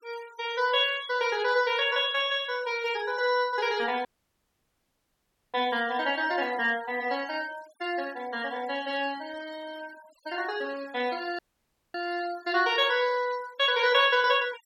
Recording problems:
noise reduction artefacts; signal-to-artefact ratio 21 dB
dropout; at 4 s for 1.5 s and at 11 s for 0.5 s

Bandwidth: 17.5 kHz